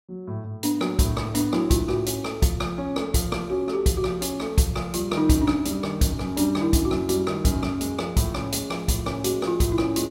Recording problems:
none

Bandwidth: 16 kHz